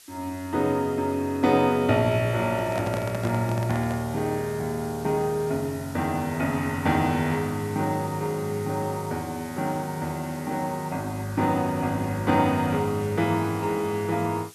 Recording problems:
background hiss; slope +3 dB per octave, SNR 19 dB
microphone handling noise; from 2.5 to 4 s; peak -3 dB vs average level

